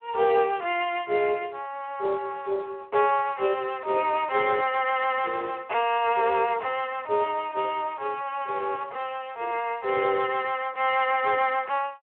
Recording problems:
telephone audio; 340 Hz to 3.3 kHz, Speex

